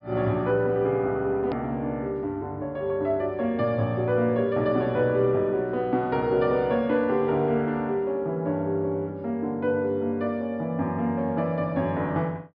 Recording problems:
treble cut off; nothing above 5.5 kHz
edit click; at 1.5 s

